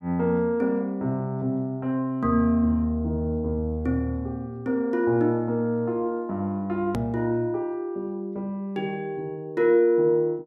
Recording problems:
hard cut with a click; at 7 s

